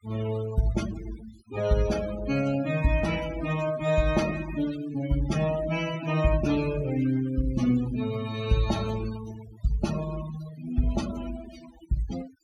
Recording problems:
noise reduction artefacts; signal-to-artefact ratio 13 dB

